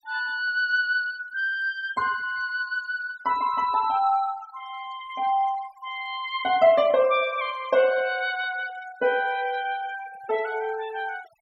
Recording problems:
noise reduction artefacts; signal-to-artefact ratio 20 dB

